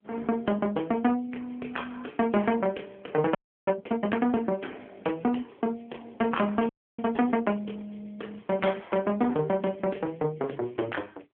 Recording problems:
phone line; 240 Hz to 3.3 kHz, AMR-NB
frozen audio; at 3.5 s and at 6.5 s

